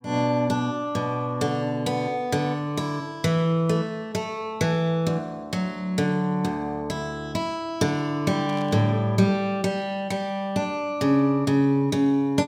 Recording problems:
static burst; at 8.5 s; peak -15 dB vs average level

